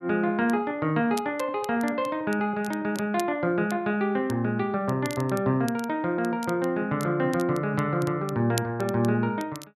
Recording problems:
crackle; vinyl, SNR 18 dB

